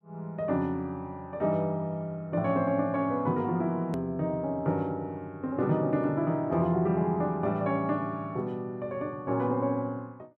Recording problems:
hard cut with a click; at 4 s

